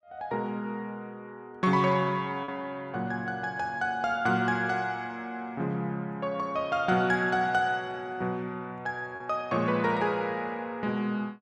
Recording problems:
packet loss; 0.7% of the sound replaced, filled with repeated pitch periods

